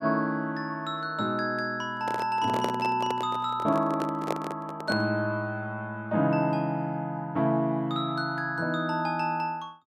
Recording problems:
microphone handling noise; from 2 to 5 s; peak +3 dB vs average level

